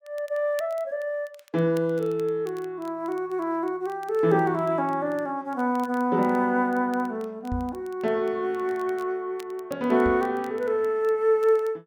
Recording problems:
crackle; vinyl, SNR 28 dB
microphone bump; at 7.5 s and at 10 s; peak -3 dB vs average level

